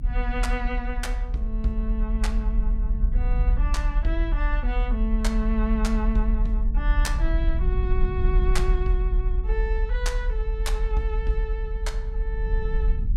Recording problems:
rumble; below 46 Hz, strongest tone 40 Hz, SNR -5 dB

